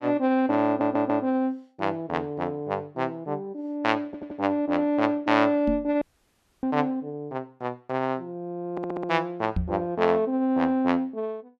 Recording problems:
audio stuttering; at 0.5 s, at 4 s and at 8.5 s
microphone bump; at 5.5 s and at 9.5 s; peak +2 dB vs average level
audio cutting out; at 6 s for 0.5 s

